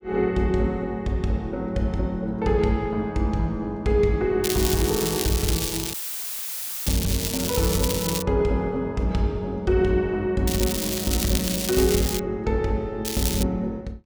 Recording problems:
crackle; from 4.5 to 8 s, from 10 to 12 s and at 13 s; loose cable, SNR 3 dB
audio cutting out; at 6 s for 1 s; filled with static

